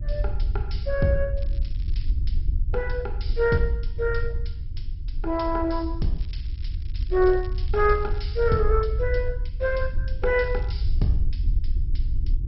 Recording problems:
lossy compression; MP2, log-spectral distance 2 dB, nothing above 5.5 kHz
low-frequency rumble; below 64 Hz, SNR 3 dB
crackle; at 1.5 s, from 6 to 8.5 s and at 10 s; loose cable, SNR 27 dB

